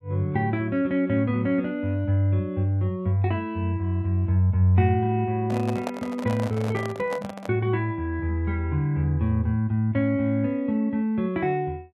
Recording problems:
microphone handling noise; from 5.5 to 7.5 s; peak -2 dB vs average level

